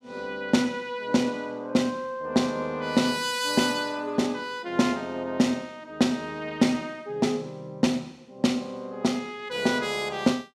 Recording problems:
none

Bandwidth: 15.5 kHz